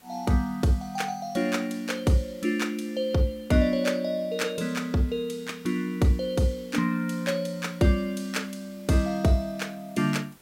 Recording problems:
background hiss; slope -3 dB per octave, SNR 28 dB

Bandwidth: 16 kHz